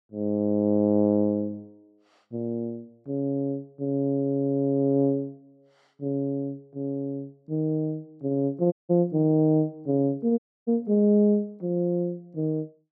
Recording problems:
audio cutting out; at 8.5 s and at 10 s

